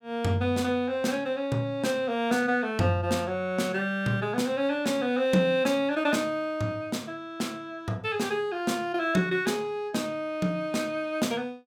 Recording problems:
none

